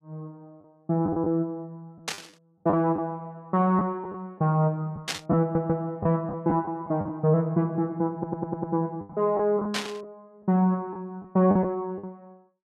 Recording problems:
packet loss; 7% of the sound replaced, filled with the last packet
burst of static; at 2 s, at 5 s and at 9.5 s; peak +2 dB vs average level
audio stuttering; at 5.5 s and at 8 s

